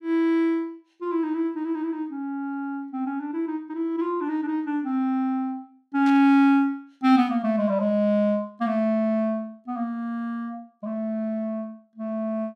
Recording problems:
static burst; at 6 s; peak -12 dB vs average level

